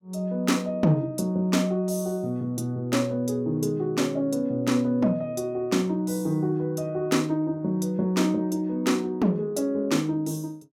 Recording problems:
none

